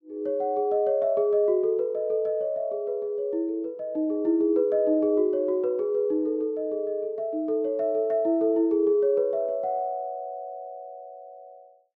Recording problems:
none

